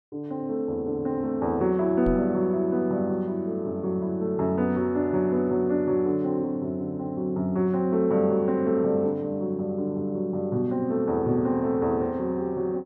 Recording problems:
knock on the microphone; at 2 s; peak -3 dB vs average level

